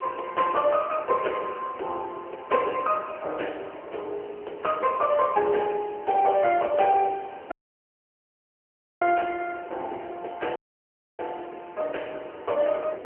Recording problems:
phone line; 370 Hz to 3 kHz, AMR-NB
hiss; SNR 27 dB
wind noise; below 570 Hz, SNR 19 dB
audio cutting out; at 7.5 s for 1.5 s and at 11 s for 0.5 s

